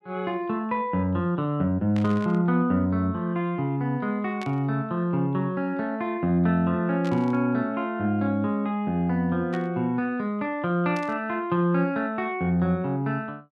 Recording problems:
burst of static; 5 times, first at 2 s; peak -10 dB vs average level

